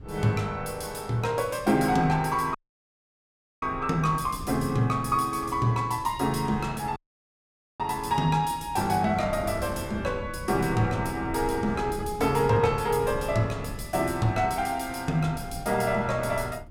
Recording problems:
wind noise; below 190 Hz, SNR 14 dB
audio cutting out; at 2.5 s for 1 s and at 7 s for 1 s

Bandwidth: 16.5 kHz